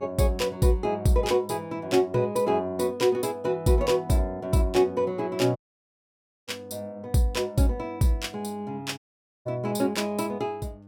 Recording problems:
mains hum; 50 Hz, harmonics up to 1.2 kHz, SNR 24 dB
audio cutting out; at 5.5 s for 1 s and at 9 s

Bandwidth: 17 kHz